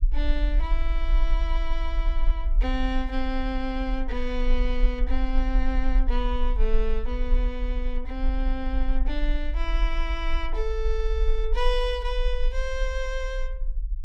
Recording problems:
low-frequency rumble; below 40 Hz, strongest tone 24 Hz, SNR -3 dB

